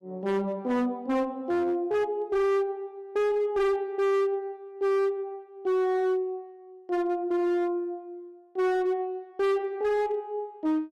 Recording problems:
distorted audio; hard clipping, signal-to-distortion ratio 7 dB

